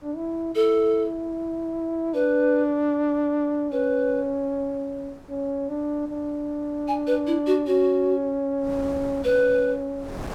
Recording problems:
wind on the microphone; below 710 Hz, SNR 22 dB

